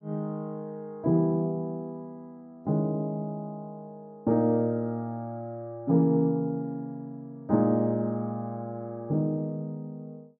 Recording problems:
none

